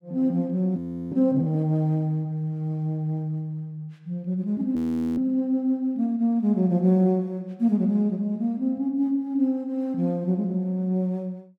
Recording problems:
frozen audio; at 1 s and at 5 s

